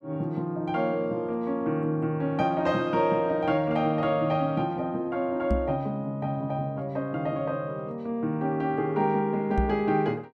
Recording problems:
knock on the microphone; at 5.5 s and at 9.5 s; peak +4 dB vs average level

